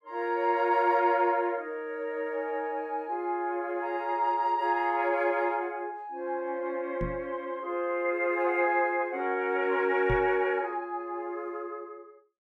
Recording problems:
microphone thump; at 7 s and at 10 s; peak 0 dB vs average level

